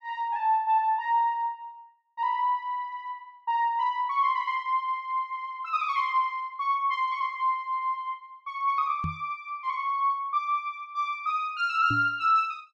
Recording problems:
microphone thump; at 9 s and at 12 s; peak -2 dB vs average level

